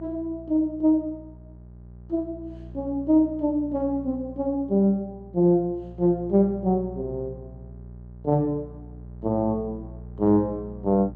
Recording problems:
hum; 60 Hz, harmonics up to 600 Hz, SNR 18 dB

